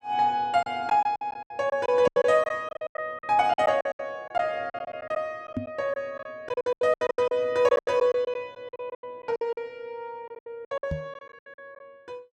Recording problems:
lost packets; 18% of the sound replaced, filled with silence
microphone bump; at 2 s, at 5.5 s and at 11 s; peak 0 dB vs average level

